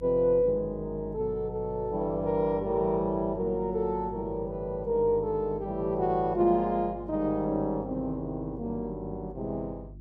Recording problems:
hum; 50 Hz, harmonics up to 350 Hz, SNR 16 dB

